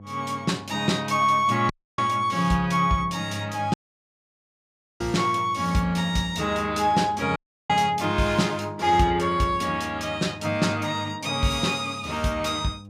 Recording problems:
hum; 50 Hz, harmonics up to 800 Hz, SNR 19 dB
audio cutting out; at 1.5 s, at 3.5 s for 1.5 s and at 7.5 s

